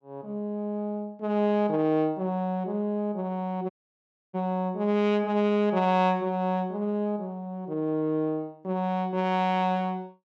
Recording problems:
dropout; at 3.5 s for 0.5 s

